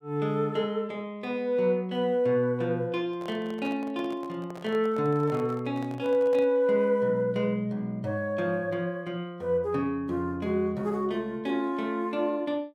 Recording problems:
handling noise; from 3 to 6.5 s; peak -12 dB vs average level

